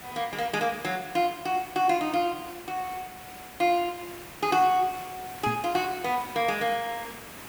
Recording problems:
background hiss; slope -3 dB per octave, SNR 15 dB
microphone bump; at 5.5 s; peak -3 dB vs average level

